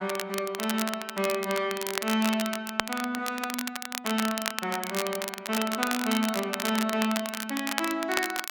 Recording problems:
crackle; vinyl, SNR 4 dB

